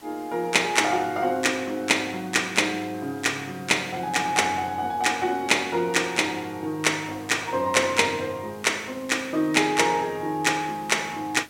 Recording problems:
background hiss; slope -2 dB per octave, SNR 25 dB

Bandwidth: 16.5 kHz